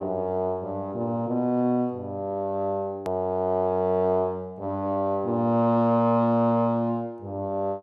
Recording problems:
click at an edit; at 3 s

